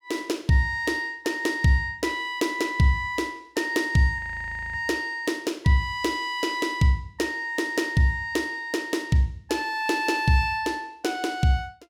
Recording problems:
audio freezing; at 4 s for 0.5 s

